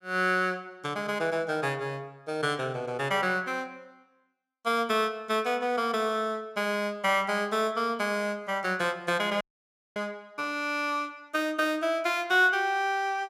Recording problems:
dropout; at 9.5 s for 0.5 s

